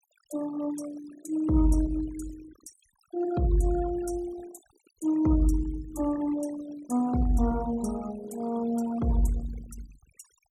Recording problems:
noise reduction artefacts; signal-to-artefact ratio 18 dB

